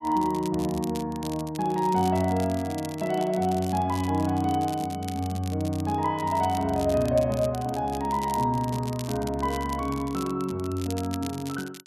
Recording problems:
crackle; vinyl, SNR 16 dB

